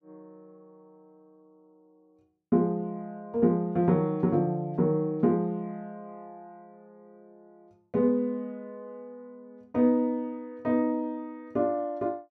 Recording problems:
none

